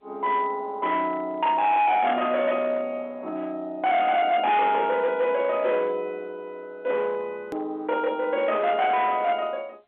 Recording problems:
telephone audio; 260 Hz to 3.8 kHz, G.711
distorted audio; hard clipping, signal-to-distortion ratio 10 dB
hard cut with a click; at 7.5 s

